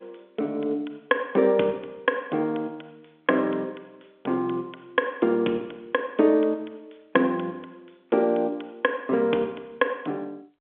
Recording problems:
phone line; 240 Hz to 3.9 kHz, G.711

